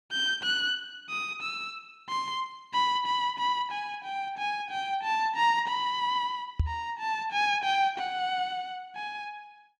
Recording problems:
microphone bump; at 6.5 s; peak +6 dB vs average level

